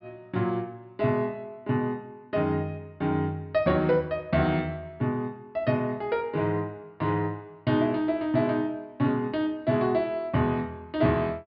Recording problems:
treble missing; nothing above 5.2 kHz

